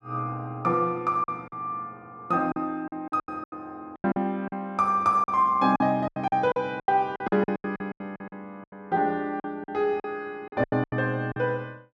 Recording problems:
lost packets; 14% of the sound replaced, filled with silence

